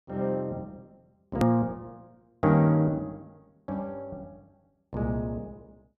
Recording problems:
hard cut with a click; at 1.5 s

